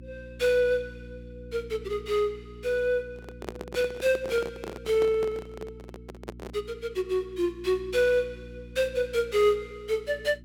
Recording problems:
hum; 60 Hz, harmonics up to 360 Hz, SNR 18 dB
microphone handling noise; from 3 to 6.5 s; peak -4 dB vs average level

